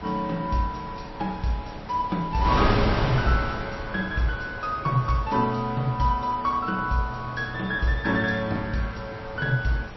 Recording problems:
codec artefacts; MP3, log-spectral distance 3 dB, nothing above 5.7 kHz
wind on the microphone; below 980 Hz, SNR 7 dB

